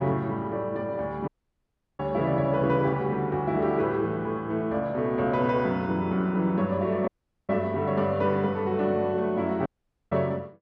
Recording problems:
dropout; at 1.5 s for 0.5 s, at 7 s and at 9.5 s

